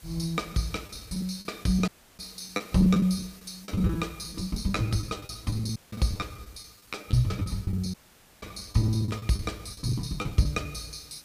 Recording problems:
hiss; slope -1 dB per octave, SNR 23 dB
lost packets; 15% of the sound replaced, filled with the last packet
audio cutting out; at 2 s, at 6 s and at 8 s

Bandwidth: 15 kHz